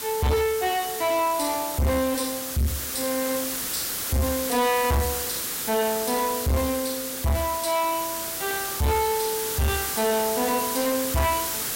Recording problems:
distorted audio; soft clipping, signal-to-distortion ratio 7 dB
hiss; slope -1 dB per octave, SNR 3 dB

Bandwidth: 16 kHz